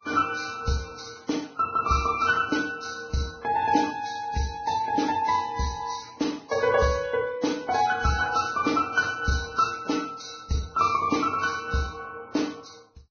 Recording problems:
lossy compression; AAC, then Vorbis, log-spectral distance 4 dB, nothing above 6.3 kHz

